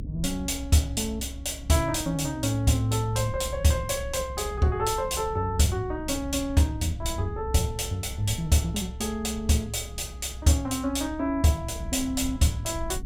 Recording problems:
rumble; below 84 Hz, strongest tone 64 Hz, SNR 12 dB

